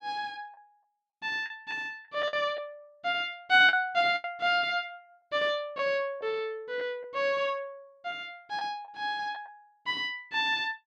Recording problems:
lost packets; 5% of the sound replaced, filled with the last packet

